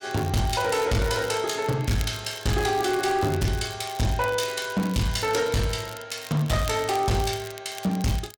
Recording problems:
distortion; hard clipping, signal-to-distortion ratio 8 dB
crackle; vinyl, SNR 16 dB

